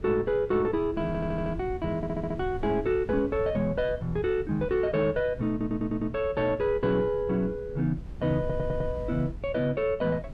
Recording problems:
wind on the microphone; below 130 Hz, SNR 13 dB
stutter; 4 times, first at 1 s

